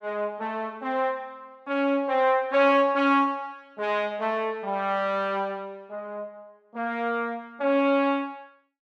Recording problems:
none

